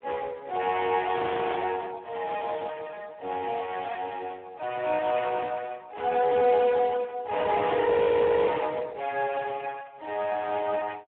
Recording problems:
phone line; 320 Hz to 2 kHz, Speex
audio freezing; at 1 s and at 8 s for 0.5 s

